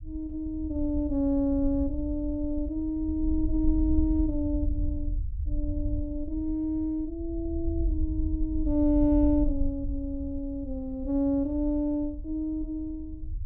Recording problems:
rumble; below 68 Hz, SNR 6 dB

